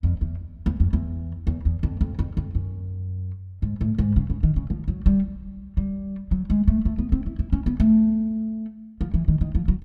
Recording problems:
none

